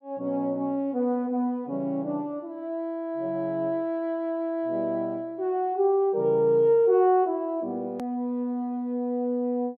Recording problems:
hard cut with a click; at 8 s

